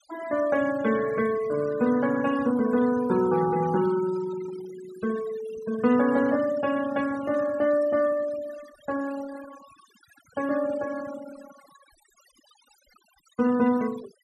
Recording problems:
noise reduction artefacts; signal-to-artefact ratio 16 dB

